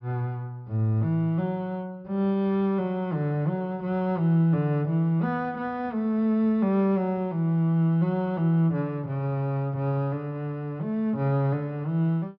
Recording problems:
low-pass filter; nothing above 5.5 kHz

